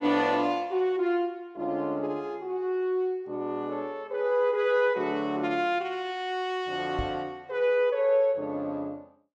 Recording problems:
knock on the microphone; at 7 s; peak -2 dB vs average level

